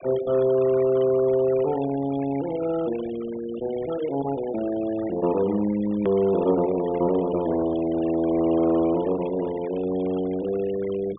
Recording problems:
low-pass filter; nothing above 3.5 kHz
noise reduction artefacts; signal-to-artefact ratio 18 dB
hard cut with a click; at 6 s

